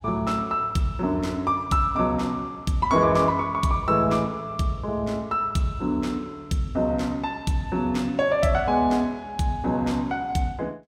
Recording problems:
none

